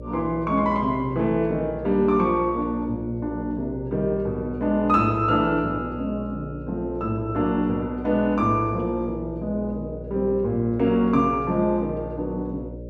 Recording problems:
hum; 60 Hz, harmonics up to 600 Hz, SNR 13 dB

